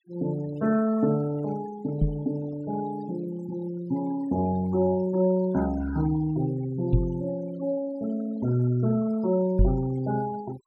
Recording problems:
denoising artefacts; signal-to-artefact ratio 19 dB
microphone thump; at 2 s, at 7 s and at 9.5 s; peak +8 dB vs average level

